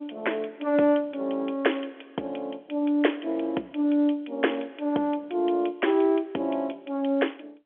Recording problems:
phone line; 240 Hz to 3.4 kHz, G.711

